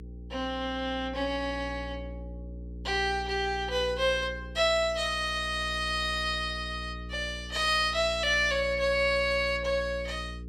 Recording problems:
hum; 60 Hz, harmonics up to 480 Hz, SNR 13 dB

